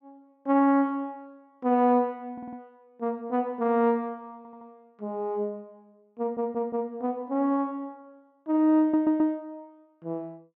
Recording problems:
stutter; 4 times, first at 2.5 s

